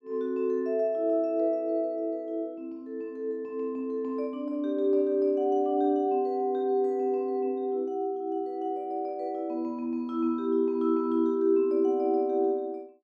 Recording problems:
none

